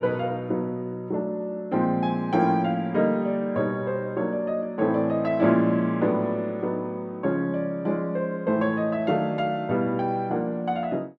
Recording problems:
none

